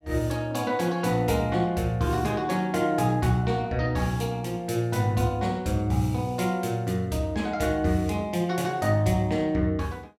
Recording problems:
none

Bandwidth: 17 kHz